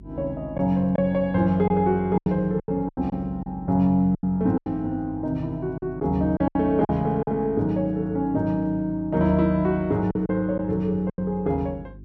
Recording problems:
hum; 50 Hz, harmonics up to 400 Hz, SNR 20 dB
lost packets; 8% of the sound replaced, filled with silence

